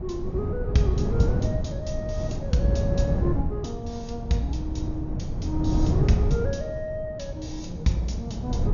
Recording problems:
treble cut off; nothing above 6.9 kHz
wind noise; below 160 Hz, SNR -2 dB

